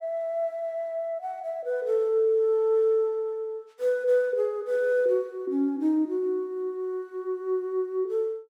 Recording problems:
none

